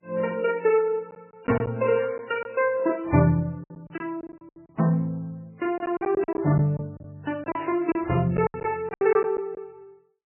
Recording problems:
lossy compression; Vorbis, then MP3, log-spectral distance 2 dB, nothing above 2.7 kHz
lost packets; 10% of the sound replaced, filled with silence
burst of static; at 2 s and at 7.5 s; peak -14 dB vs average level

